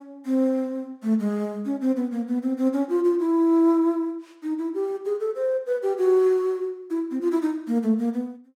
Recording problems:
none

